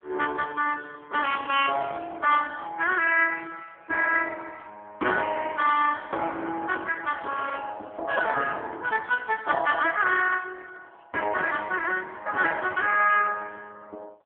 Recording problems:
telephone audio; 300 Hz to 3.2 kHz, AMR-NB

